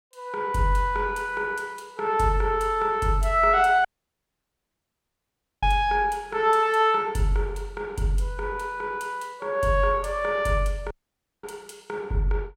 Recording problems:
dropout; at 4 s for 2 s and at 11 s for 0.5 s

